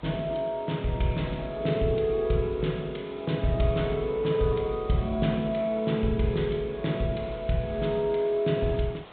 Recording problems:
treble cut off; nothing above 4 kHz
background hiss; SNR 22 dB

